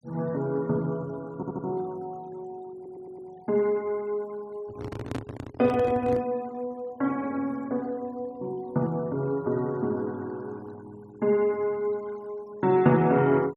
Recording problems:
denoising artefacts; signal-to-artefact ratio 26 dB
stutter; at 1.5 s and at 3 s
handling noise; from 4.5 to 6 s; peak -1 dB vs average level

